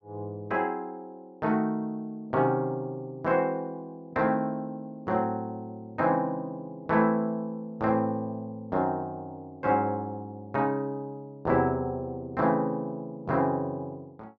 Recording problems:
none

